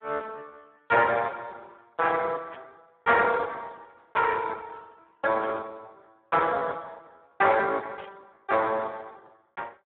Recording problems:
telephone audio; 340 Hz to 3.9 kHz, Speex
static burst; at 2.5 s, at 5.5 s and at 8 s; peak -18 dB vs average level

